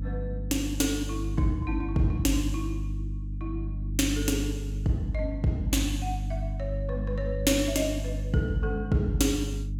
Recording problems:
hum; 50 Hz, harmonics up to 300 Hz, SNR 4 dB

